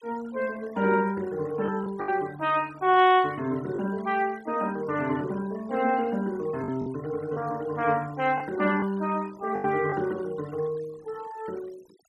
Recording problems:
noise reduction artefacts; signal-to-artefact ratio 22 dB
lost packets; 3% of the sound replaced, filled with the last packet

